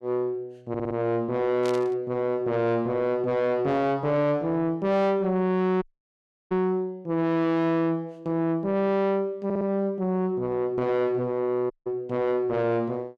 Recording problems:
distorted audio; soft clipping, signal-to-distortion ratio 6 dB
audio stuttering; at 0.5 s and at 9.5 s
static burst; at 1.5 s; peak -9 dB vs average level
audio cutting out; at 6 s for 0.5 s and at 12 s

